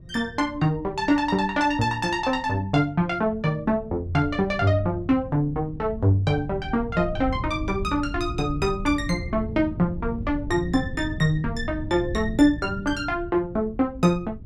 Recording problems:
wind noise; below 130 Hz, SNR 12 dB

